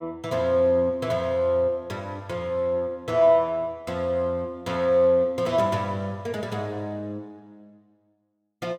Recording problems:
none

